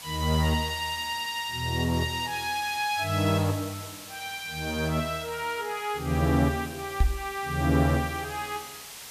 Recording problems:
hiss; slope +1 dB per octave, SNR 13 dB
knock on the microphone; at 7 s; peak +8 dB vs average level

